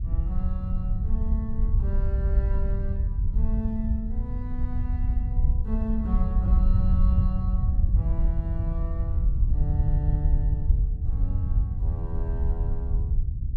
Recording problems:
wind noise; below 76 Hz, SNR -9 dB

